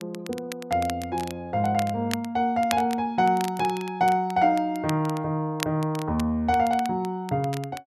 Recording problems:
crackling; vinyl, SNR 15 dB

